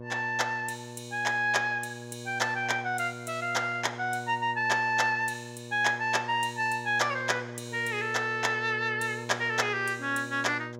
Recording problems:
hum; 60 Hz, harmonics up to 1.1 kHz, SNR 14 dB

